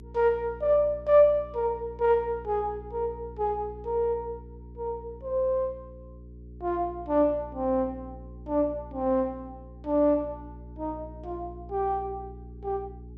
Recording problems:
hum; 60 Hz, harmonics up to 420 Hz, SNR 17 dB

